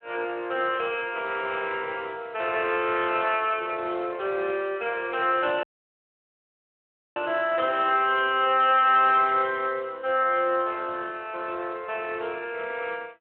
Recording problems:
telephone audio; 300 Hz to 3.3 kHz, Speex
audio cutting out; at 5.5 s for 1.5 s

